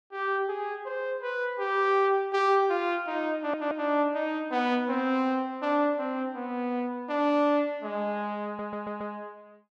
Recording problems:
stutter; at 3.5 s and at 8.5 s

